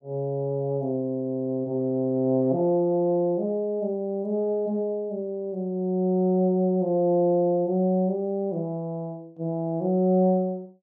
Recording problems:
none

